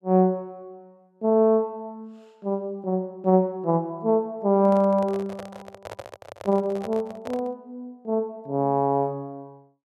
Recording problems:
microphone handling noise; from 4.5 to 7.5 s; peak -8 dB vs average level

